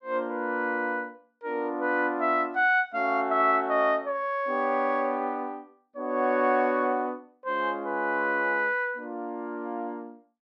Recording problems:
none

